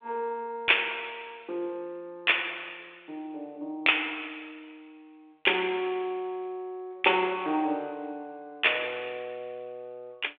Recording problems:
phone line; 320 Hz to 3.6 kHz, G.726

